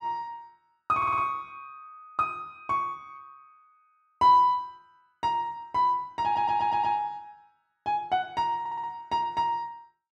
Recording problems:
audio stuttering; at 1 s, at 6 s and at 8.5 s

